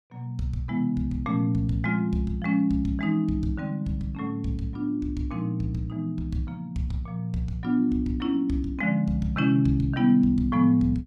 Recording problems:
none

